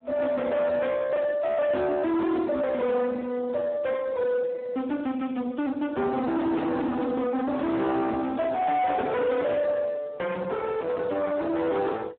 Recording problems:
telephone audio; 240 Hz to 2.1 kHz, Speex
distorted audio; soft clipping, signal-to-distortion ratio 6 dB

